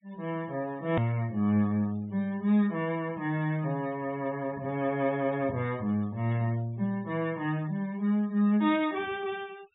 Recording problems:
treble cut off; nothing above 4 kHz
noise reduction artefacts; signal-to-artefact ratio 26 dB
click at an edit; at 1 s

